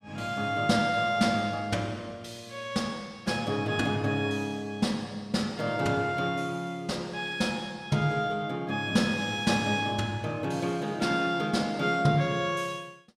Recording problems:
none

